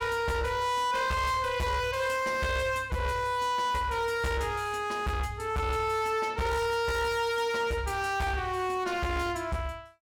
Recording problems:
distorted audio; hard clipping, uneven, signal-to-distortion ratio 7 dB

